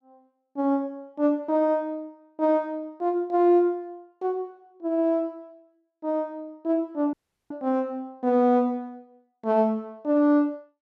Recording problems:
audio cutting out; at 7 s

